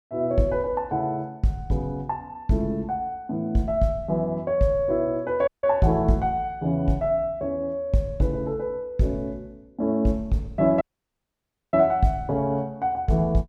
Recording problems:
dropout; at 5.5 s and at 11 s for 1 s

